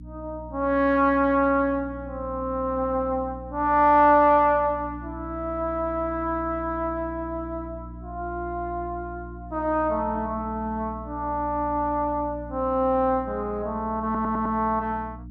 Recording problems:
electrical hum; 60 Hz, harmonics up to 300 Hz, SNR 15 dB
audio stuttering; at 14 s

